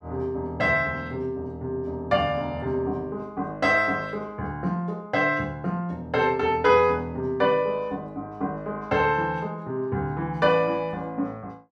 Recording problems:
none

